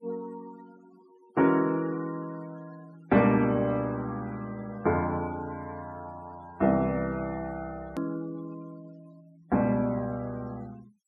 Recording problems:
noise reduction artefacts; signal-to-artefact ratio 24 dB
hard cut with a click; at 8 s

